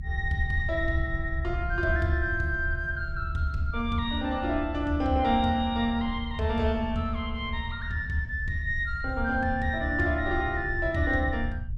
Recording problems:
rumble; below 78 Hz, SNR 6 dB

